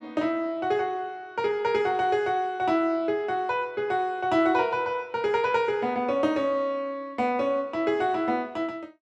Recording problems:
none

